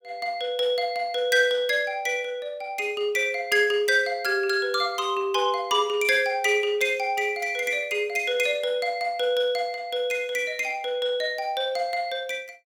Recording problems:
none

